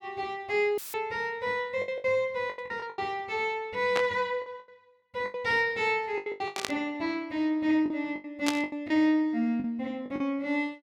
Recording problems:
packet loss; 11% of the sound replaced, filled with the last packet
dropout; at 1 s; filled with static
burst of static; 4 times, first at 2.5 s; peak +4 dB vs average level

